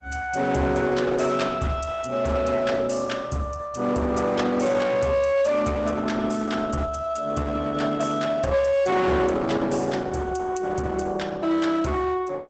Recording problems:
codec artefacts; Opus, log-spectral distance 3 dB, nothing above 8 kHz
distortion; hard clipping, signal-to-distortion ratio 10 dB

